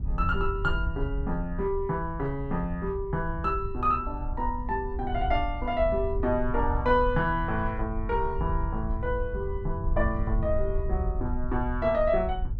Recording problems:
wind noise; below 72 Hz, SNR 5 dB

